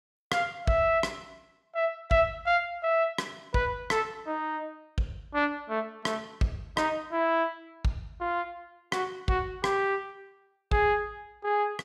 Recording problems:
none

